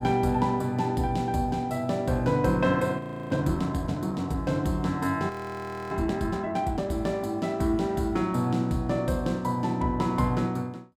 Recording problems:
frozen audio; at 3 s and at 5.5 s for 0.5 s

